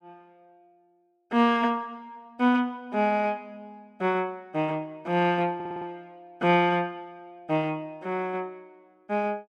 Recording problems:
stutter; at 5.5 s

